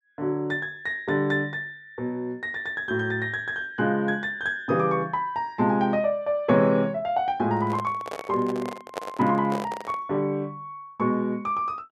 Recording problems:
microphone handling noise; from 7.5 to 10 s; peak -2 dB vs average level

